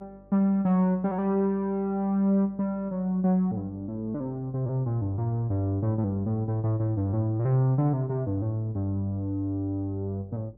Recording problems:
hum; 50 Hz, harmonics up to 600 Hz, SNR 27 dB

